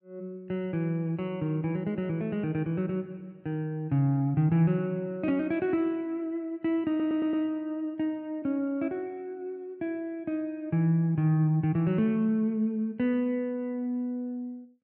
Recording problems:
stutter; at 7 s

